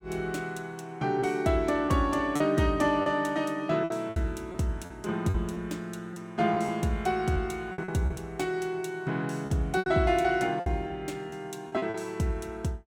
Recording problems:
packet loss; 7% of the sound replaced, filled with repeated pitch periods

